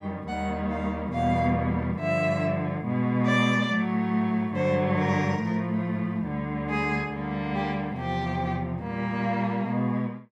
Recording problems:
none

